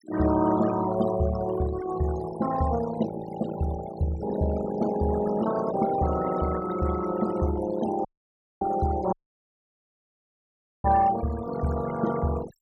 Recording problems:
denoising artefacts; signal-to-artefact ratio 11 dB
dropout; at 8 s for 0.5 s and at 9 s for 1.5 s

